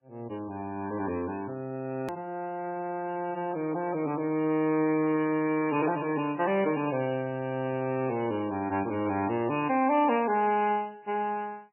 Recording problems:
lossy codec; MP3, log-spectral distance 3 dB, nothing above 2.4 kHz
edit click; at 2 s

